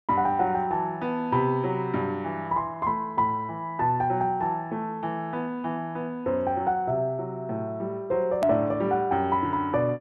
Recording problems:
hard cut with a click; at 8.5 s

